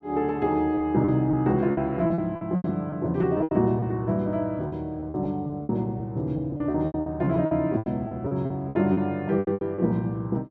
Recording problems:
packet loss; 14% of the sound replaced, filled with repeated pitch periods

